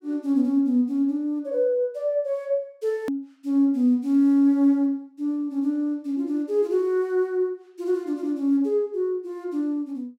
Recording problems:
edit click; at 3 s

